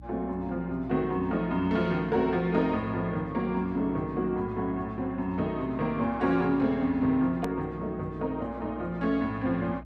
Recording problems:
hum; 60 Hz, harmonics up to 300 Hz, SNR 18 dB
edit click; at 7.5 s

